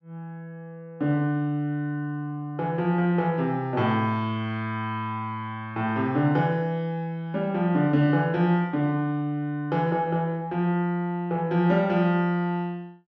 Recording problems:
none

